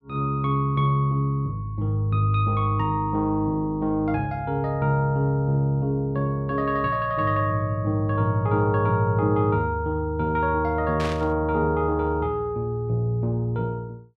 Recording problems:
static burst; at 11 s; peak -6 dB vs average level

